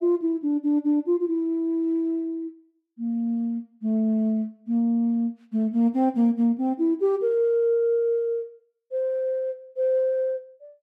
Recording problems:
none

